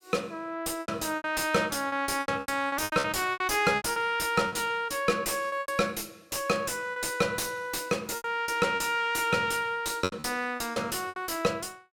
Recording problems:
distortion; soft clipping, signal-to-distortion ratio 9 dB
packet loss; 13% of the sound replaced, filled with repeated pitch periods

